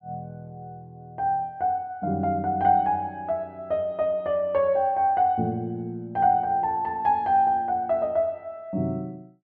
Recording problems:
none

